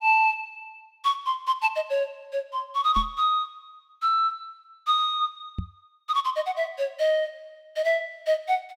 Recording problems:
microphone bump; at 3 s and at 5.5 s; peak -1 dB vs average level

